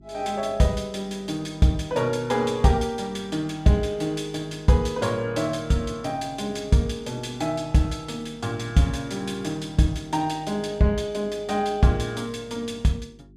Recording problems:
hum; 50 Hz, harmonics up to 400 Hz, SNR 25 dB

